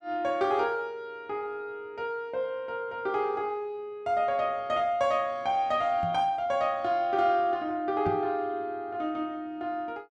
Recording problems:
microphone bump; at 6 s and at 8 s; peak -3 dB vs average level

